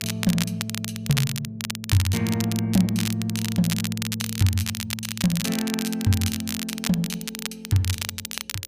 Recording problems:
electrical hum; 60 Hz, harmonics up to 540 Hz, SNR 34 dB
crackle; vinyl, SNR 5 dB

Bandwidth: 15 kHz